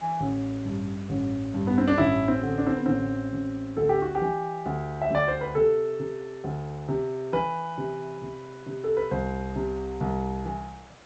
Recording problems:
lossy compression; G.722, log-spectral distance 3 dB
hiss; slope -4 dB per octave, SNR 23 dB

